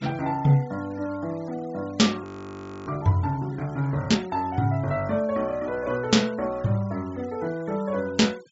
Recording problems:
treble cut off; nothing above 8 kHz
denoising artefacts; signal-to-artefact ratio 24 dB
audio freezing; at 2 s for 0.5 s

